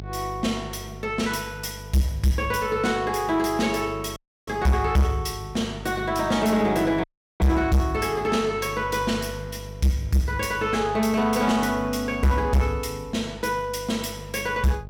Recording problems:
distorted audio; soft clipping, signal-to-distortion ratio 7 dB
electrical hum; 50 Hz, harmonics up to 650 Hz, SNR 15 dB
audio cutting out; at 4 s and at 7 s

